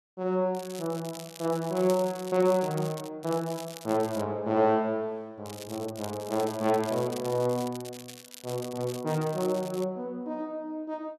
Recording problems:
crackling; from 0.5 to 3 s, at 3 s and from 5.5 to 10 s; loose cable, SNR 15 dB

